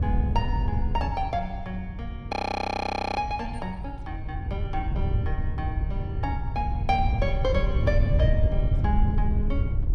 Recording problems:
wind noise; below 98 Hz, SNR -3 dB
frozen audio; at 2.5 s for 1 s

